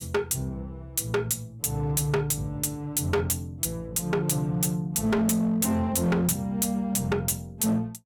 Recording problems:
distortion; hard clipping, signal-to-distortion ratio 7 dB

